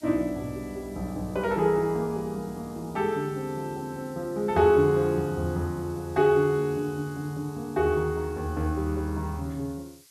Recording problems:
background hiss; slope +4 dB per octave, SNR 25 dB

